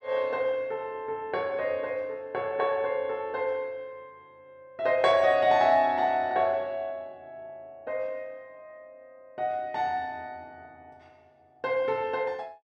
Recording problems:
none

